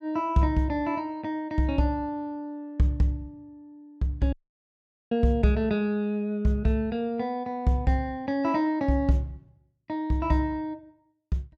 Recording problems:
audio cutting out; at 4.5 s for 1 s

